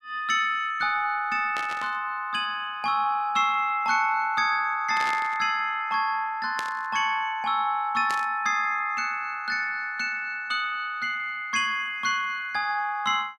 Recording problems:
static burst; 4 times, first at 1.5 s; peak -4 dB vs average level

